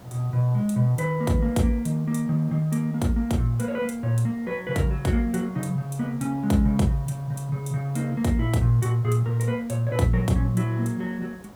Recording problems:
hiss; SNR 24 dB

